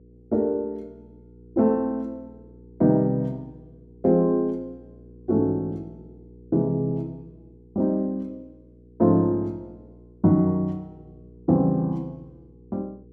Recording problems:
electrical hum; 60 Hz, harmonics up to 480 Hz, SNR 25 dB

